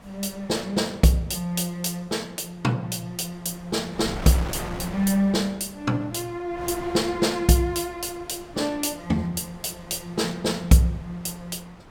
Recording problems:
wind on the microphone; below 1.1 kHz, SNR 16 dB

